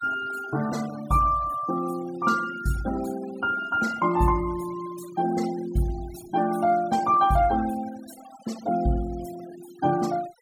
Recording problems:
denoising artefacts; signal-to-artefact ratio 17 dB

